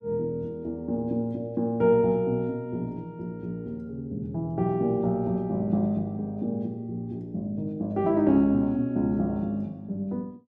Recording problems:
none

